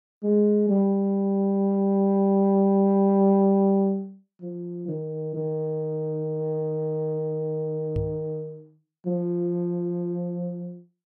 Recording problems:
knock on the microphone; at 8 s; peak -2 dB vs average level

